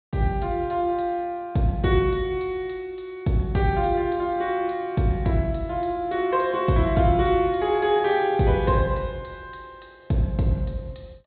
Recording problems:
low-pass filter; nothing above 4 kHz

